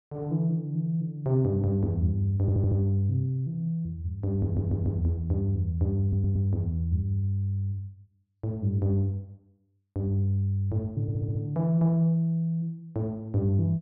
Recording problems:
audio stuttering; 4 times, first at 2.5 s

